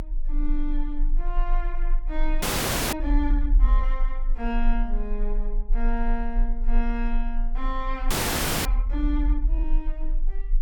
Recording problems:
low-frequency rumble; below 38 Hz, strongest tone 24 Hz, SNR -5 dB
audio freezing; at 2.5 s for 0.5 s and at 8 s for 0.5 s

